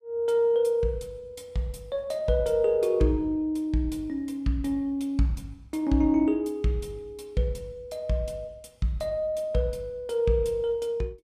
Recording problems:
none

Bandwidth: 14.5 kHz